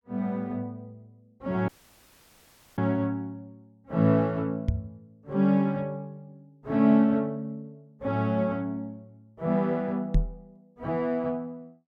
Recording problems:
audio cutting out; at 1.5 s for 1 s
microphone thump; at 4.5 s and at 10 s; peak +6 dB vs average level

